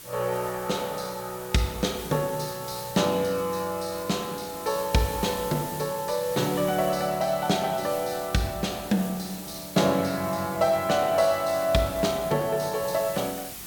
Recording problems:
background hiss; SNR 12 dB

